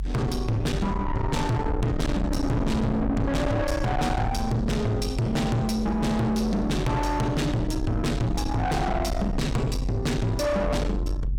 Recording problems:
distorted audio; soft clipping, signal-to-distortion ratio 6 dB
low-frequency rumble; below 260 Hz, strongest tone 46 Hz, SNR 4 dB

